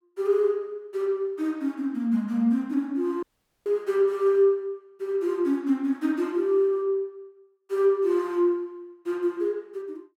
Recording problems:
dropout; at 3 s

